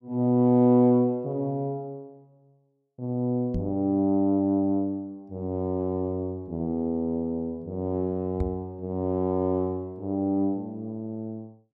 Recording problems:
microphone thump; at 3.5 s and at 8.5 s; peak 0 dB vs average level

